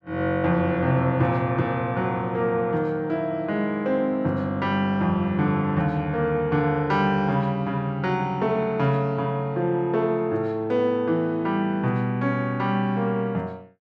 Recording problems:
none

